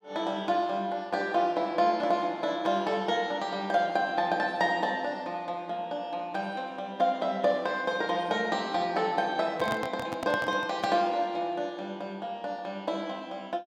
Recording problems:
handling noise; from 9.5 to 11 s; peak 0 dB vs average level

